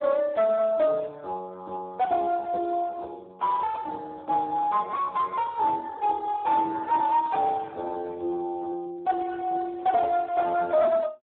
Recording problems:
phone line; 300 Hz to 2 kHz, Speex
distorted audio; soft clipping, signal-to-distortion ratio 9 dB

